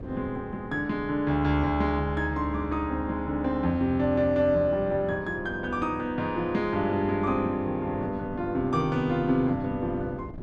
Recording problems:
wind noise; below 320 Hz, SNR 16 dB

